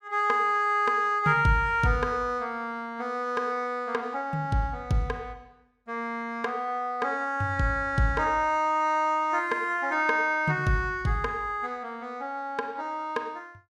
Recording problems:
none

